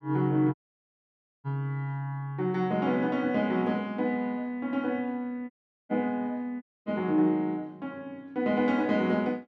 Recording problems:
audio cutting out; at 0.5 s for 1 s, at 5.5 s and at 6.5 s

